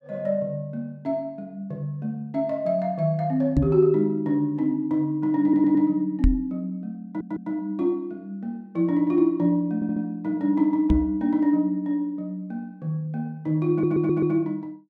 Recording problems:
knock on the microphone; at 3.5 s, at 6 s and at 11 s; peak +7 dB vs average level
stutter; 4 times, first at 5.5 s

